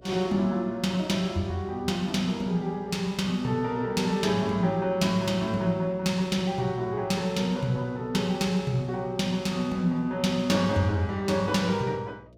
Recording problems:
mains hum; 60 Hz, harmonics up to 660 Hz, SNR 26 dB

